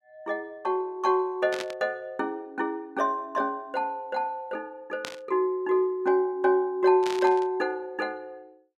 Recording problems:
burst of static; at 1.5 s, at 5 s and at 7 s; peak -3 dB vs average level

